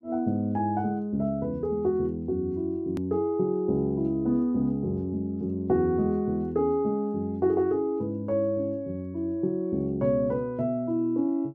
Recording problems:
edit click; at 3 s

